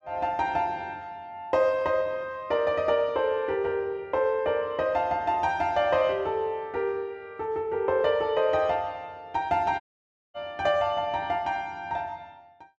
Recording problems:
audio cutting out; at 10 s for 0.5 s

